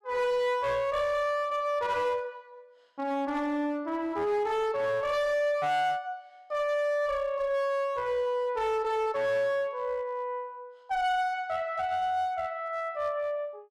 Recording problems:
distorted audio; hard clipping, uneven, signal-to-distortion ratio 11 dB

